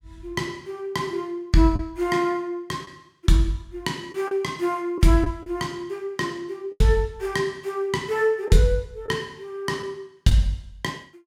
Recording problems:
packet loss; 3% of the sound replaced, filled with the last packet

